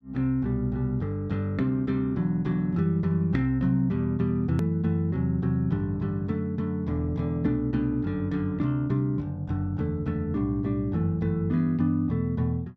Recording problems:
hard cut with a click; at 4.5 s

